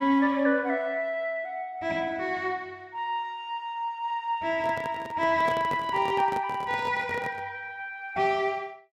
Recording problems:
handling noise; from 4.5 to 7.5 s; peak -3 dB vs average level

